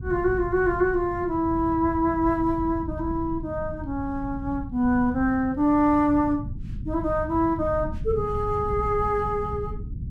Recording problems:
rumble; below 140 Hz, SNR 11 dB

